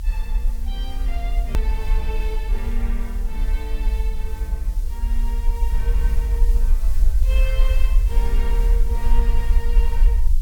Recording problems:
hiss; slope +3 dB per octave, SNR 11 dB
low-frequency rumble; below 46 Hz, SNR -12 dB
click at an edit; at 1.5 s

